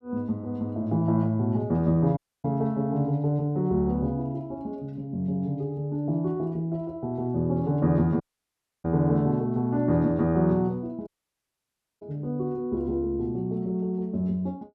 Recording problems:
audio cutting out; at 2 s, at 8 s for 0.5 s and at 11 s for 1 s

